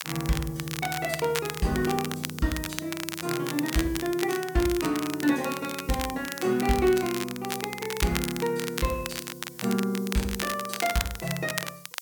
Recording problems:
hiss; SNR 19 dB
crackle; vinyl, SNR 6 dB

